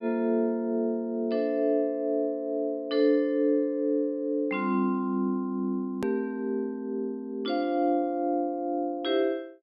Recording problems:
treble missing; nothing above 5.5 kHz
click at an edit; at 6 s

